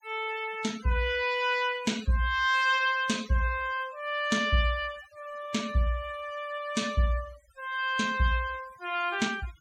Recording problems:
denoising artefacts; signal-to-artefact ratio 20 dB

